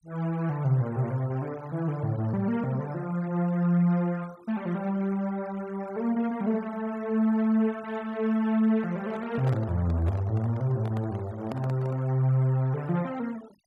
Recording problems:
denoising artefacts; signal-to-artefact ratio 24 dB
microphone handling noise; from 9 to 12 s; peak -8 dB vs average level

